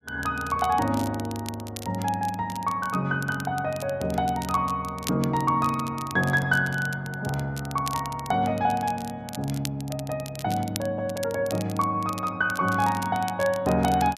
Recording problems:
crackle; vinyl, SNR 15 dB

